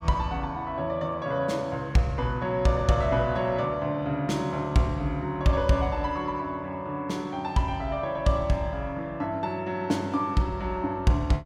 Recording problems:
none

